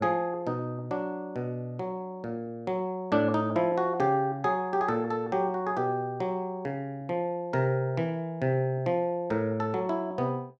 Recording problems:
none

